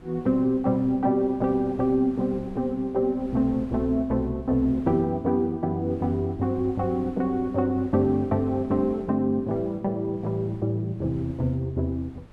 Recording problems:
wind noise; below 330 Hz, SNR 21 dB

